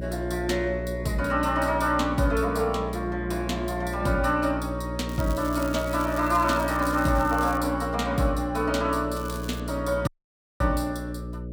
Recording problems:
hum; 60 Hz, harmonics up to 600 Hz, SNR 8 dB
crackle; from 5 to 7.5 s and at 9 s; loose cable, SNR 17 dB
audio cutting out; at 10 s for 0.5 s

